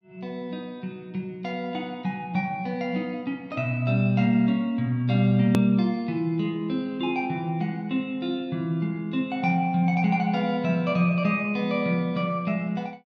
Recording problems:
edit click; at 5.5 s

